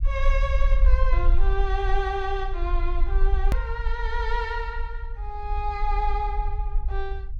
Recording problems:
rumble; below 46 Hz, strongest tone 20 Hz, SNR -3 dB
click at an edit; at 3.5 s

